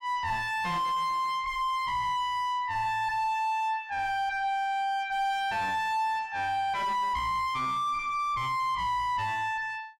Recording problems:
distortion; soft clipping, signal-to-distortion ratio 5 dB

